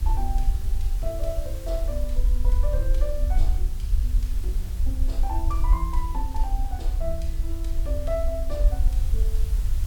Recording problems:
background hiss; slope -2 dB per octave, SNR 11 dB
rumble; below 54 Hz, SNR -8 dB

